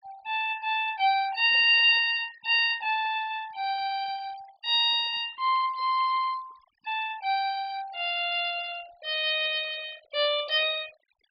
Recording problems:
low-pass filter; nothing above 5.1 kHz
denoising artefacts; signal-to-artefact ratio 20 dB

